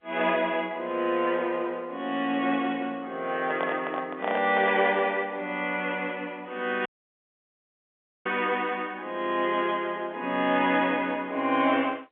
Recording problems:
telephone audio; 220 Hz to 3.6 kHz, G.711
microphone handling noise; from 3.5 to 5 s; peak 0 dB vs average level
audio cutting out; at 7 s for 1.5 s

